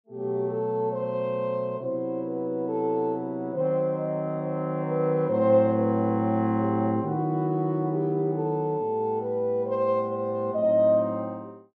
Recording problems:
none

